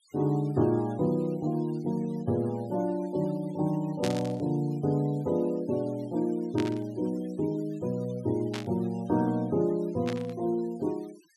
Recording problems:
denoising artefacts; signal-to-artefact ratio 25 dB
burst of static; 4 times, first at 4 s; peak -2 dB vs average level

